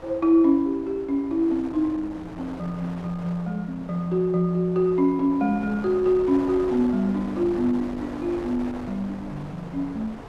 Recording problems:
wind on the microphone; below 960 Hz, SNR 16 dB

